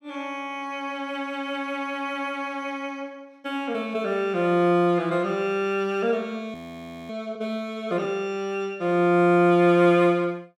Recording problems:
audio freezing; at 6.5 s for 0.5 s

